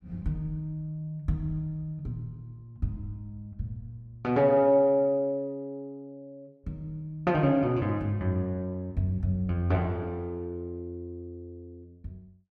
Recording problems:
none

